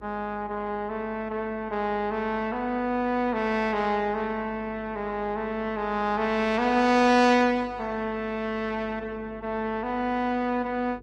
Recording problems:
lossy codec; Opus, log-spectral distance 2 dB
mains hum; 50 Hz, harmonics up to 550 Hz, SNR 23 dB

